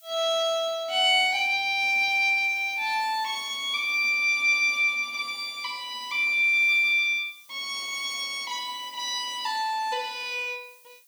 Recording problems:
background hiss; slope +5 dB per octave, SNR 29 dB

